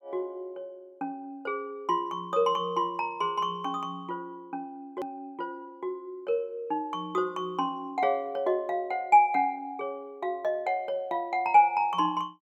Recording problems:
edit click; at 5 s

